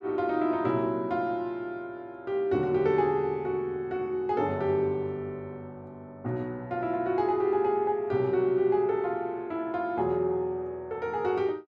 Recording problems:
none

